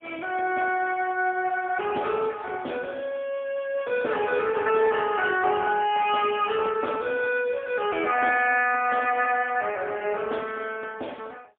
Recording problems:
phone line; 320 Hz to 3.3 kHz, AMR-NB, then MP3

